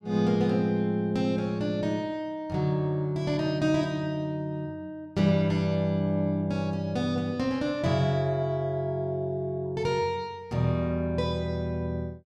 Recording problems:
none

